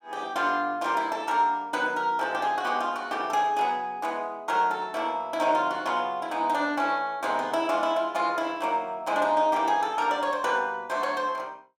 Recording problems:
none

